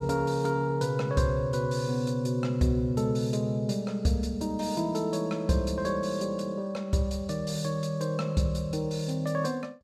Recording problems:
none

